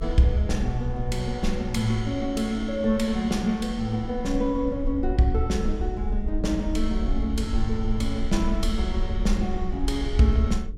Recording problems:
hum; 60 Hz, harmonics up to 480 Hz, SNR 19 dB
low-frequency rumble; below 56 Hz, SNR 6 dB

